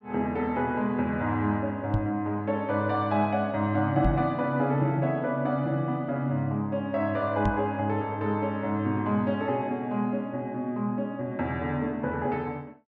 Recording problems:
microphone bump; at 2 s, at 4 s and at 7.5 s; peak +4 dB vs average level

